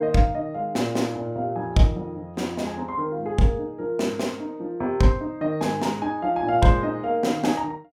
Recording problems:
none

